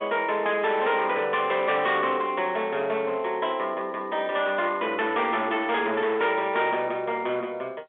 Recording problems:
telephone audio; 300 Hz to 3.7 kHz, G.711
distorted audio; hard clipping, uneven, signal-to-distortion ratio 11 dB

